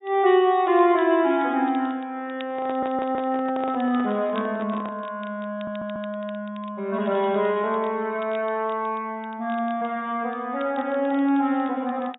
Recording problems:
treble cut off; nothing above 4 kHz
crackle; vinyl, SNR 27 dB
handling noise; from 2.5 to 5 s; peak -8 dB vs average level
audio stuttering; at 2.5 s and at 5.5 s

